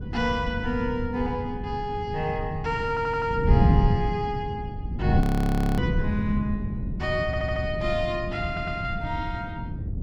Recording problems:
wind on the microphone; below 180 Hz, SNR 0 dB
audio stuttering; at 3 s, at 7.5 s and at 8.5 s
audio freezing; at 5 s for 0.5 s

